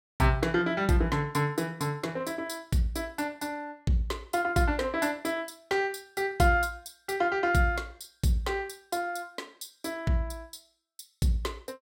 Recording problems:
none

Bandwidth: 16.5 kHz